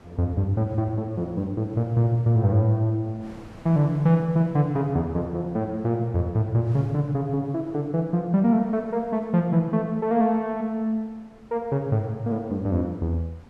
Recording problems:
wind on the microphone; below 790 Hz, SNR 26 dB

